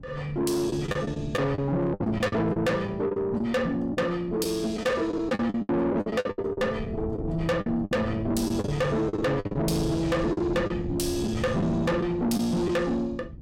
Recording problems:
distortion; soft clipping, signal-to-distortion ratio 7 dB
wind on the microphone; below 250 Hz, SNR 11 dB
lost packets; 11% of the sound replaced, filled with the last packet

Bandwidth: 16.5 kHz